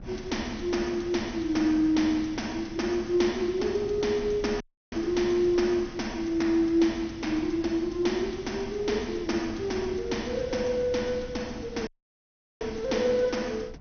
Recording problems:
lossy codec; MP2, log-spectral distance 3 dB, nothing above 6.3 kHz
wind noise; below 200 Hz, SNR 17 dB
dropout; at 4.5 s and at 12 s for 0.5 s

